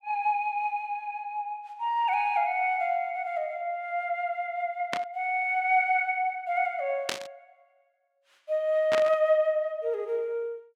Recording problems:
static burst; at 5 s, at 7 s and at 9 s; peak +3 dB vs average level

